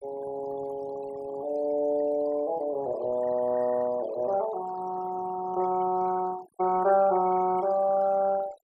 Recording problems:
noise reduction artefacts; signal-to-artefact ratio 18 dB

